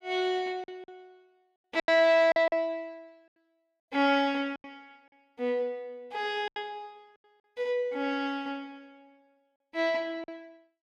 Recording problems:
lost packets; 6% of the sound replaced, filled with silence

